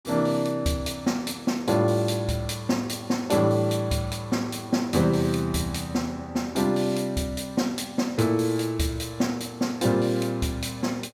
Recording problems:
none

